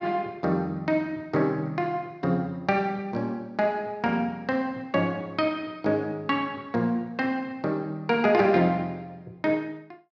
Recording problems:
none

